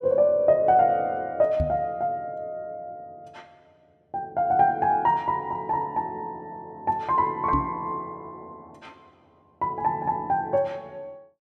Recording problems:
microphone thump; at 1.5 s and at 7.5 s; peak +1 dB vs average level

